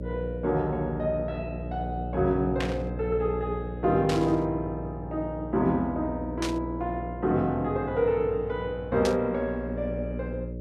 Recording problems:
hum; 60 Hz, harmonics up to 600 Hz, SNR 8 dB
burst of static; 4 times, first at 2.5 s; peak 0 dB vs average level

